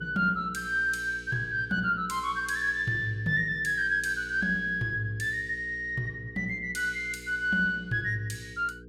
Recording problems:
hum; 60 Hz, harmonics up to 480 Hz, SNR 19 dB

